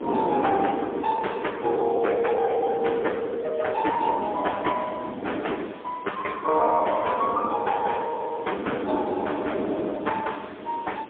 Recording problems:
telephone audio; 240 Hz to 3.6 kHz, AMR-NB, then MP3
background hiss; SNR 27 dB
wind noise; below 510 Hz, SNR 8 dB
packet loss; 14% of the sound replaced, filled with the last packet

